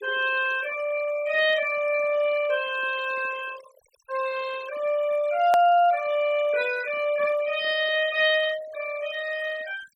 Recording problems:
denoising artefacts; signal-to-artefact ratio 17 dB
hard cut with a click; at 5.5 s

